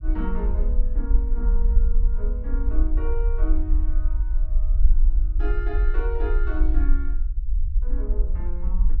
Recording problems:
low-frequency rumble; below 46 Hz, SNR -11 dB

